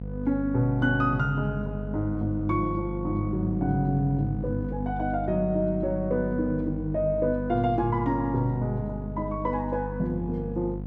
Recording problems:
mains hum; 50 Hz, harmonics up to 550 Hz, SNR 7 dB

